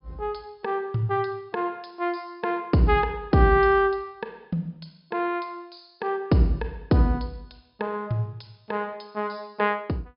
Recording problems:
treble missing; nothing above 5.5 kHz

